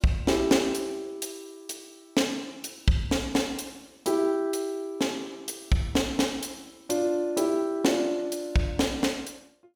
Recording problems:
none

